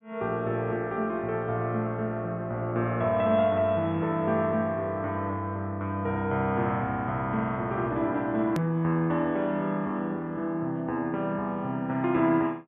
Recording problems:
treble cut off; nothing above 3.7 kHz
click at an edit; at 8.5 s

